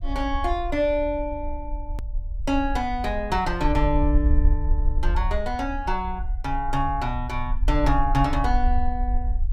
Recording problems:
rumble; below 58 Hz, SNR 2 dB
hard cut with a click; at 2 s

